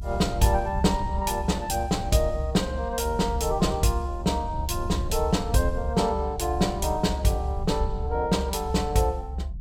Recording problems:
low-frequency rumble; below 72 Hz, SNR 6 dB

